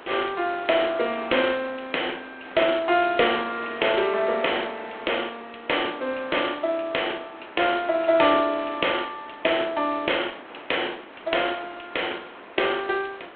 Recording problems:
phone line; 300 Hz to 3.5 kHz, G.726
background hiss; SNR 16 dB

